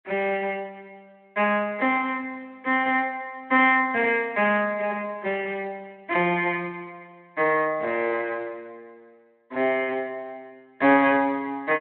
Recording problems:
phone line; 300 Hz to 3.3 kHz, Speex

